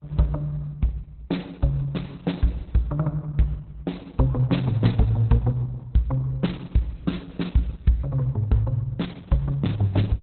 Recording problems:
codec artefacts; Opus, log-spectral distance 3 dB, nothing above 4 kHz

